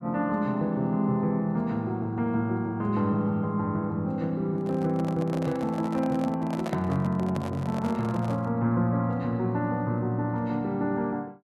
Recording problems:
handling noise; from 4.5 to 8.5 s; peak -3 dB vs average level

